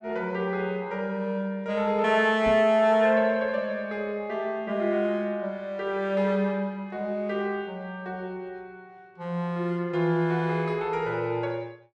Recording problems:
microphone thump; at 2.5 s; peak -5 dB vs average level

